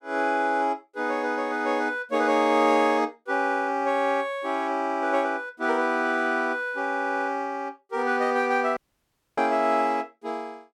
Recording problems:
dropout; at 9 s for 0.5 s

